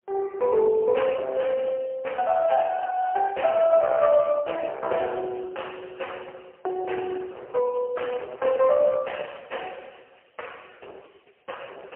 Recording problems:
phone line; 340 Hz to 3 kHz, AMR-NB, then MP3
distortion; hard clipping, uneven, signal-to-distortion ratio 10 dB

